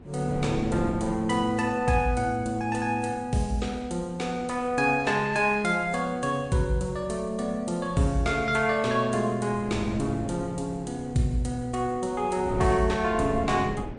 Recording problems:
lossy compression; MP3, log-spectral distance 2 dB, nothing above 9 kHz
wind noise; below 400 Hz, SNR 14 dB

